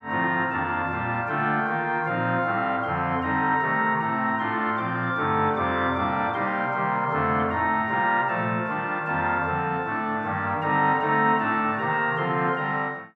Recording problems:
none

